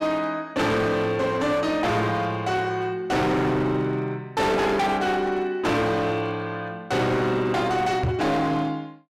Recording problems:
distorted audio; hard clipping, signal-to-distortion ratio 7 dB
microphone bump; at 8 s; peak +2 dB vs average level

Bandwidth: 15.5 kHz